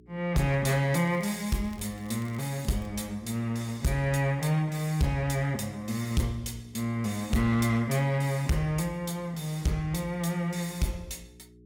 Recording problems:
distorted audio; hard clipping, uneven, signal-to-distortion ratio 12 dB
electrical hum; 60 Hz, harmonics up to 420 Hz, SNR 26 dB
crackle; from 1 to 3 s; loose cable, SNR 25 dB

